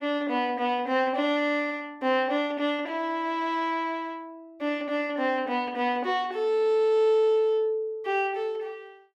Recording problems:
none

